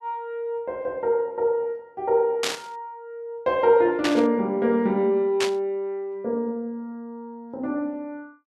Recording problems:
static burst; at 2.5 s, at 4 s and at 5.5 s; peak +2 dB vs average level

